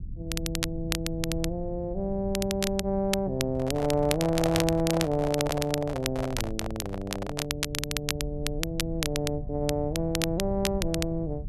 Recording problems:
low-frequency rumble; below 98 Hz, SNR 10 dB
crackle; vinyl, SNR 5 dB
microphone handling noise; from 3.5 to 7.5 s; peak +3 dB vs average level

